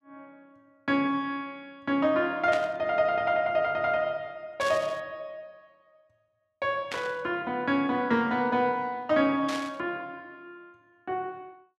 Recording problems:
burst of static; 4 times, first at 2.5 s; peak -3 dB vs average level

